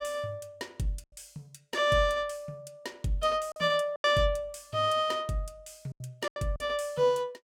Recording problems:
lost packets; 5% of the sound replaced, filled with silence

